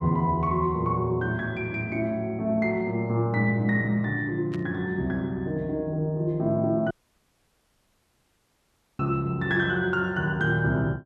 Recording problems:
burst of static; at 4.5 s; peak -14 dB vs average level
audio cutting out; at 7 s for 2 s

